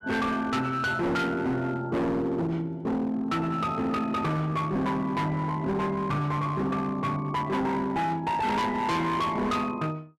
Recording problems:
distorted audio; hard clipping, signal-to-distortion ratio 7 dB

